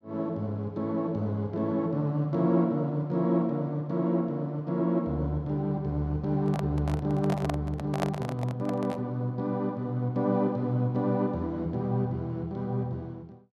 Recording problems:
microphone handling noise; from 6.5 to 9 s; peak +3 dB vs average level

